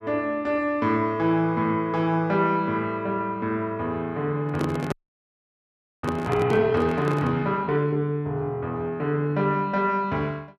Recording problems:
microphone handling noise; from 4.5 to 7.5 s; peak 0 dB vs average level
audio freezing; at 5 s for 1 s

